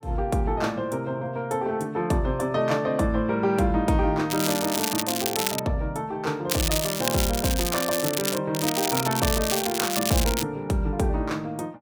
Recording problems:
crackle; from 4.5 to 5.5 s, from 6.5 to 8.5 s and from 8.5 to 10 s; loose cable, SNR 2 dB

